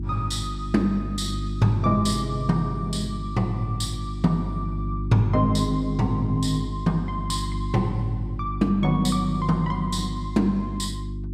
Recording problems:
electrical hum; 50 Hz, harmonics up to 350 Hz, SNR 6 dB

